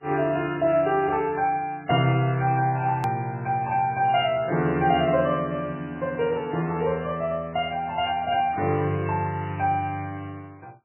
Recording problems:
lossy compression; MP3, log-spectral distance 3 dB, nothing above 2.8 kHz
hard cut with a click; at 3 s

